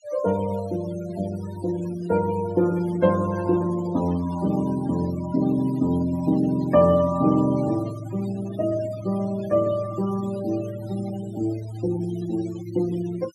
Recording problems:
denoising artefacts; signal-to-artefact ratio 18 dB

